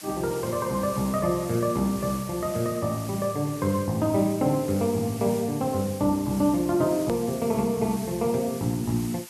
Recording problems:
background hiss; slope +2 dB per octave, SNR 15 dB
hard cut with a click; at 7 s

